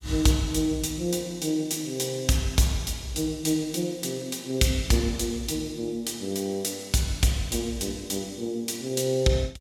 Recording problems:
none

